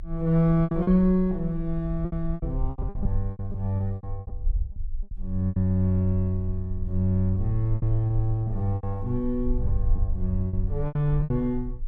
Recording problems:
rumble; below 52 Hz, strongest tone 22 Hz, SNR 8 dB
lost packets; 11% of the sound replaced, filled with repeated pitch periods

